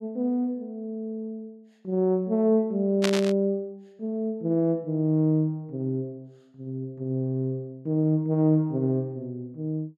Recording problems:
burst of static; at 3 s; peak +3 dB vs average level

